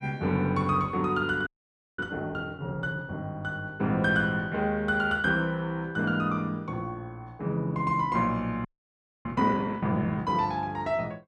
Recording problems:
frozen audio; at 1.5 s for 0.5 s and at 8.5 s for 0.5 s

